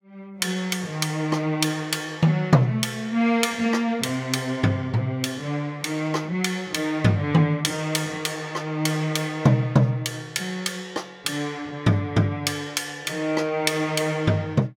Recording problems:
none

